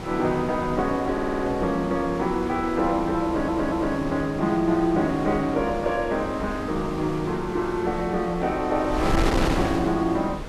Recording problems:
wind noise; below 800 Hz, SNR 8 dB
audio stuttering; at 1 s and at 3.5 s

